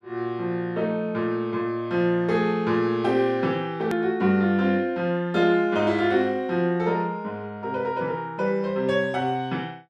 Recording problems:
edit click; at 4 s

